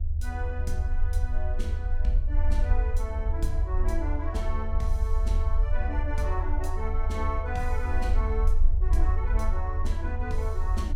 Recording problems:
electrical hum; 60 Hz, harmonics up to 720 Hz, SNR 21 dB
low-frequency rumble; below 68 Hz, strongest tone 22 Hz, SNR -7 dB

